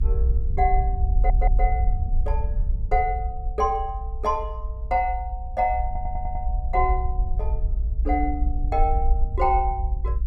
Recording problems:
rumble; below 58 Hz, SNR 0 dB
audio stuttering; at 1 s and at 6 s

